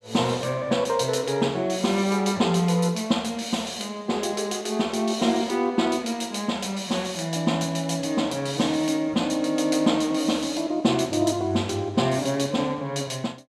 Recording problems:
none

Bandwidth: 14.5 kHz